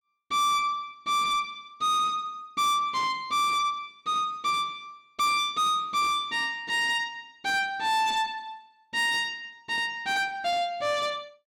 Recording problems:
distortion; soft clipping, signal-to-distortion ratio 11 dB

